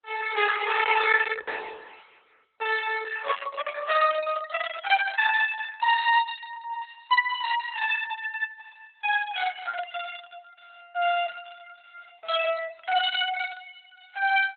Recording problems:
lossy codec; MP3, then Opus, log-spectral distance 5 dB, nothing above 4 kHz

